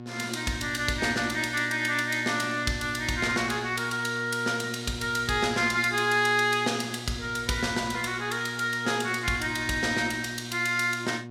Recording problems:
hum; 60 Hz, harmonics up to 1.4 kHz, SNR 12 dB

